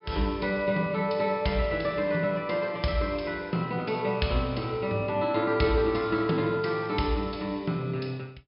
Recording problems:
treble cut off; nothing above 5.5 kHz

